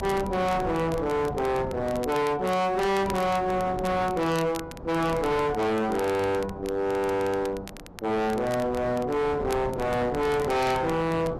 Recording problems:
distorted audio; hard clipping, signal-to-distortion ratio 6 dB
wind noise; below 580 Hz, SNR 12 dB
crackle; vinyl, SNR 20 dB

